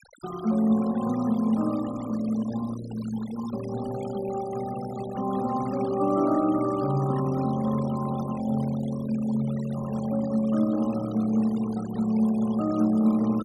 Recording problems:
denoising artefacts; signal-to-artefact ratio 17 dB

